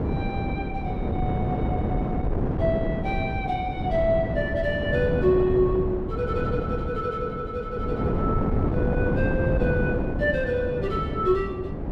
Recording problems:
wind noise; below 350 Hz, SNR 0 dB

